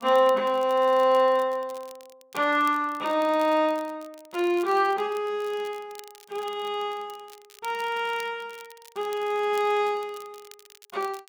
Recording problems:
crackling; vinyl, SNR 24 dB

